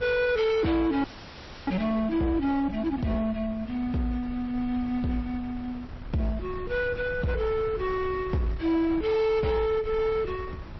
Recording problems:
codec artefacts; MP3, log-spectral distance 2 dB, nothing above 5.7 kHz
distortion; hard clipping, signal-to-distortion ratio 12 dB
wind noise; below 190 Hz, SNR 15 dB
audio freezing; at 1 s for 0.5 s

